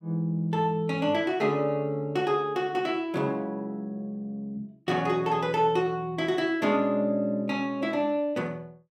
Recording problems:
none

